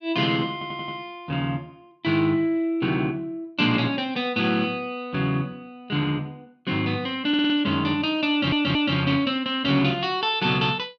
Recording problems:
stutter; at 0.5 s, at 7.5 s and at 8.5 s

